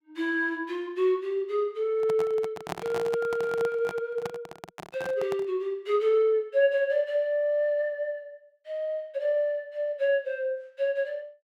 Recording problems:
microphone handling noise; from 2 to 5.5 s; peak -1 dB vs average level

